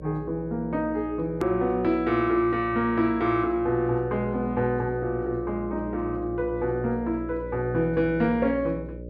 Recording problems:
hum; 60 Hz, harmonics up to 600 Hz, SNR 13 dB
hard cut with a click; at 1.5 s

